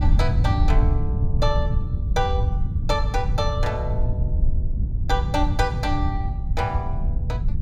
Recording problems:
low-frequency rumble; below 100 Hz, SNR -4 dB

